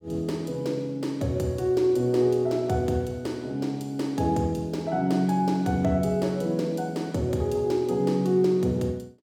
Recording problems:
none

